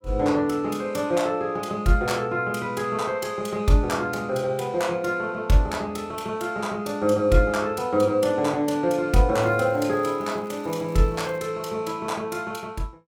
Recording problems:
crackling; from 9.5 to 11 s; loose cable, SNR 29 dB

